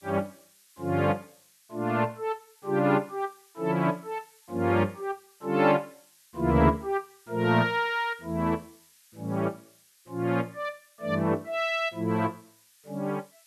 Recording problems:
background hiss; SNR 29 dB

